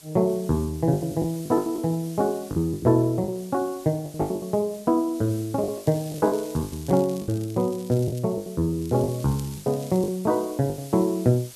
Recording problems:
background hiss; SNR 20 dB
lost packets; 12% of the sound replaced, filled with the last packet
crackle; from 5.5 to 8 s and from 9 to 10 s; loose cable, SNR 22 dB

